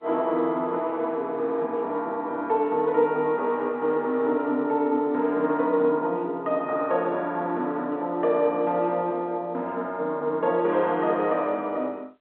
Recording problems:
telephone audio; 240 Hz to 3.8 kHz, G.711

